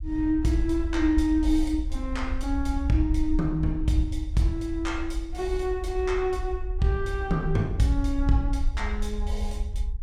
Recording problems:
low-frequency rumble; below 60 Hz, SNR 5 dB

